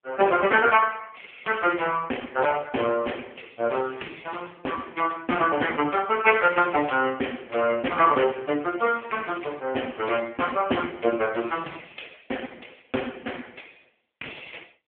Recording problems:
phone line; 280 Hz to 2.9 kHz, AMR-NB

